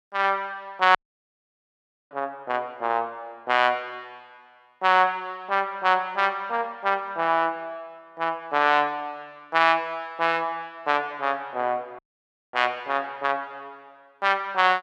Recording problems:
dropout; at 1 s for 1 s and at 12 s for 0.5 s

